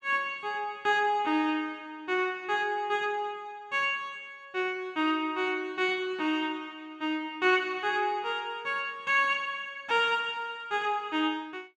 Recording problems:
none

